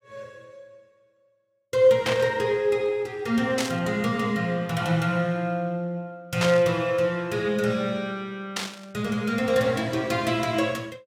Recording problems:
static burst; 4 times, first at 2 s; peak +1 dB vs average level

